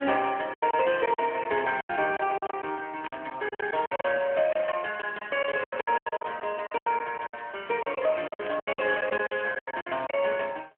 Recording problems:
phone line; 300 Hz to 3.2 kHz, AMR-NB
lost packets; 16% of the sound replaced, filled with silence
burst of static; 4 times, first at 1.5 s; peak -7 dB vs average level

